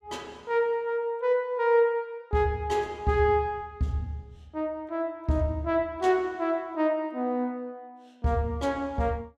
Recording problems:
none

